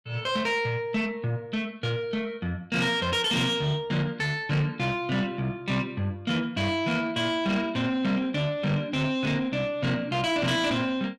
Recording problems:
distortion; soft clipping, signal-to-distortion ratio 11 dB

